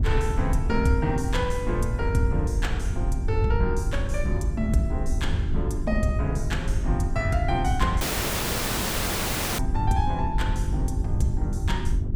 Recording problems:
mains hum; 50 Hz, harmonics up to 400 Hz, SNR 7 dB
wind on the microphone; below 80 Hz, SNR 1 dB
dropout; at 8 s for 1.5 s

